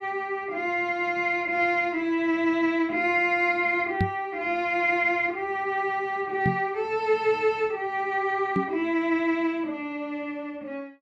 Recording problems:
microphone thump; at 4 s, at 6.5 s and at 8.5 s; peak +4 dB vs average level

